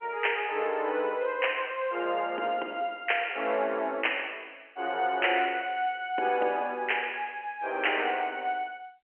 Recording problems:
phone line; 280 Hz to 3.1 kHz, G.711

